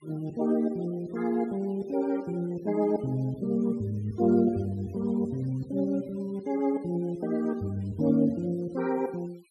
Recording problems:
noise reduction artefacts; signal-to-artefact ratio 27 dB

